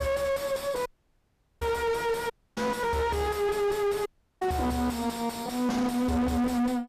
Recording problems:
distorted audio; soft clipping, signal-to-distortion ratio 5 dB
audio cutting out; at 1 s for 1 s, at 2.5 s and at 4 s

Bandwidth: 14.5 kHz